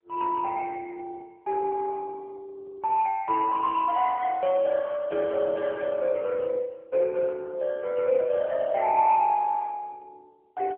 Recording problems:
phone line; 300 Hz to 3.1 kHz, AMR-NB

